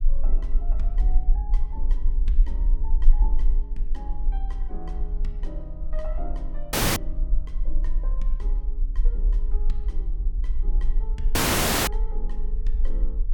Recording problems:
low-frequency rumble; below 38 Hz, strongest tone 20 Hz, SNR -15 dB
audio cutting out; at 6.5 s and at 11 s for 0.5 s

